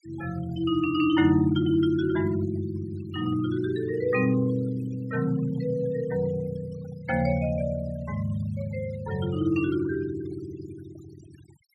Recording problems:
noise reduction artefacts; signal-to-artefact ratio 21 dB

